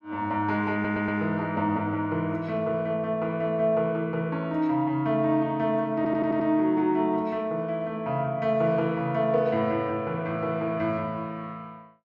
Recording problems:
audio stuttering; at 0.5 s and at 6 s

